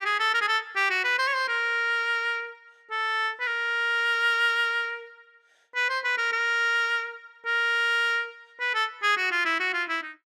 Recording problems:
none

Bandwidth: 15 kHz